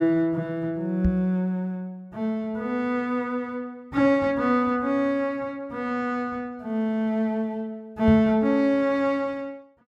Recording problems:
microphone thump; at 1 s and at 8 s; peak +3 dB vs average level

